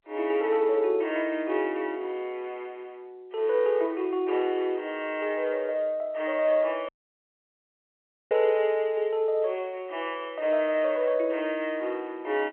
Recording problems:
phone line; 300 Hz to 3.2 kHz, G.711
audio cutting out; at 7 s for 1.5 s

